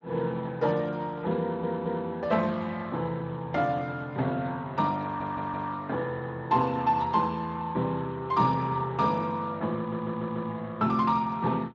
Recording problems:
lossy codec; Speex, log-spectral distance 3 dB, nothing above 7.3 kHz
audio stuttering; at 1.5 s, at 5 s and at 10 s

